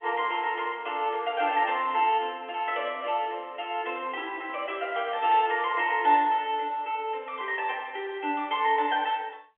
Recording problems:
telephone audio; 260 Hz to 3.5 kHz, G.711

